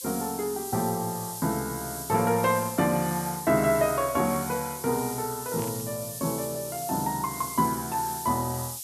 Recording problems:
background hiss; SNR 8 dB
burst of static; at 5.5 s; peak -13 dB vs average level

